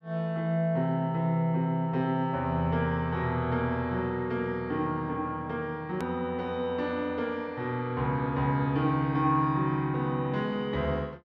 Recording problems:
edit click; at 6 s

